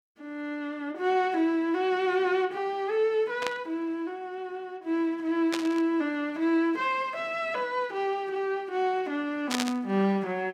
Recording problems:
static burst; at 3.5 s, at 5.5 s and at 9.5 s; peak +2 dB vs average level

